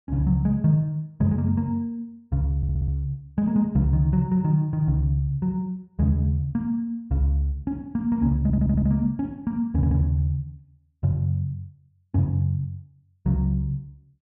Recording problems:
stutter; at 2.5 s, at 8.5 s and at 9.5 s

